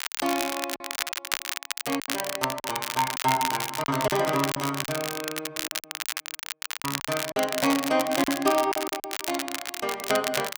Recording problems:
crackling; vinyl, SNR 3 dB
lost packets; 10% of the sound replaced, filled with silence

